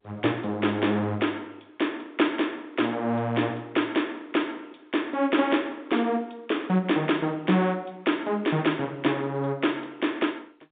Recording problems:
phone line; 130 Hz to 3.7 kHz, G.711

